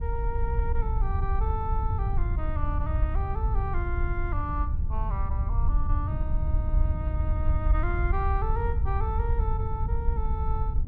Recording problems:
wind on the microphone; below 74 Hz, SNR -7 dB

